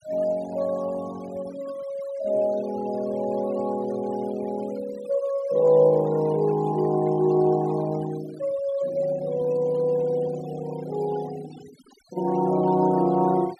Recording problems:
noise reduction artefacts; signal-to-artefact ratio 21 dB

